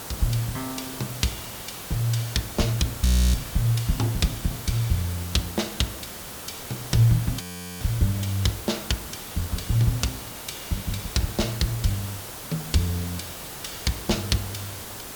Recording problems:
background hiss; slope -3 dB per octave, SNR 9 dB
audio freezing; at 3 s and at 7.5 s

